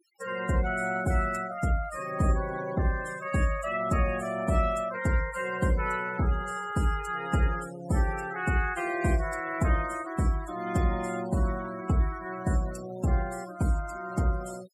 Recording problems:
denoising artefacts; signal-to-artefact ratio 15 dB

